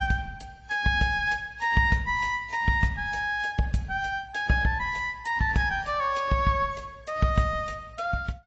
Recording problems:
lossy codec; AAC, log-spectral distance 2 dB, nothing above 7.3 kHz

